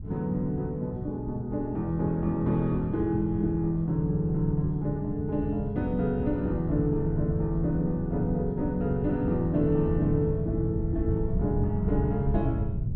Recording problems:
wind noise; below 130 Hz, SNR 6 dB

